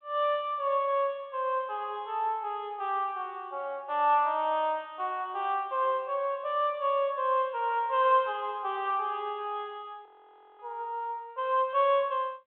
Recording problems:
telephone audio; 320 Hz to 3.6 kHz, G.726
frozen audio; at 10 s for 0.5 s

